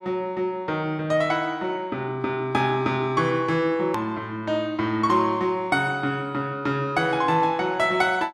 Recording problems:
edit click; at 4 s

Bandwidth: 13.5 kHz